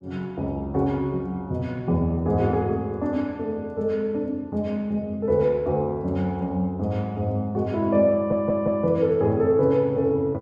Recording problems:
stutter; at 8 s

